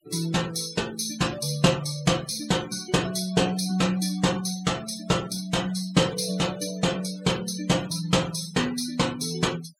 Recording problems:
denoising artefacts; signal-to-artefact ratio 17 dB

